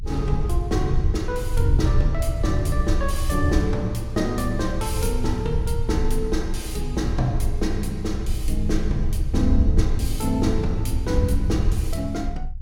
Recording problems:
rumble; below 78 Hz, strongest tone 24 Hz, SNR 0 dB

